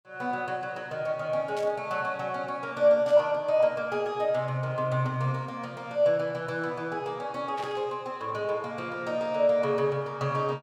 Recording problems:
static burst; at 1.5 s, at 3 s and at 7.5 s; peak -11 dB vs average level

